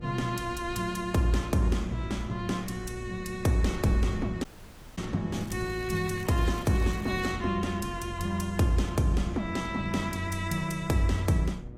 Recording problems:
lossy compression; AAC, log-spectral distance 3 dB, nothing above 15.1 kHz
electrical hum; 60 Hz, harmonics up to 1.3 kHz, SNR 21 dB
wind on the microphone; below 140 Hz, SNR 16 dB
audio cutting out; at 4.5 s for 0.5 s
crackle; from 5.5 to 7.5 s; loose cable, SNR 21 dB

